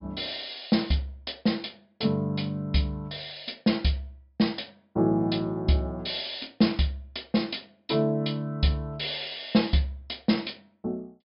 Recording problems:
treble missing; nothing above 5.5 kHz

